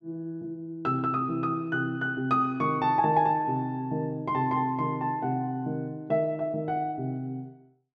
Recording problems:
none

